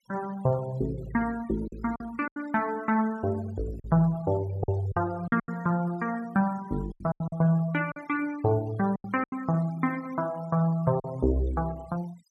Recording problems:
noise reduction artefacts; signal-to-artefact ratio 22 dB
lost packets; 7% of the sound replaced, filled with silence

